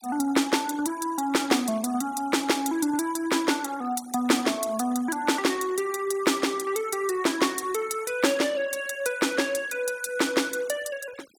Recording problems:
noise reduction artefacts; signal-to-artefact ratio 21 dB

